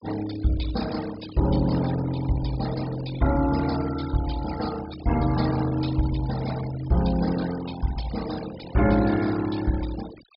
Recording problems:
low-pass filter; nothing above 5.5 kHz
noise reduction artefacts; signal-to-artefact ratio 14 dB

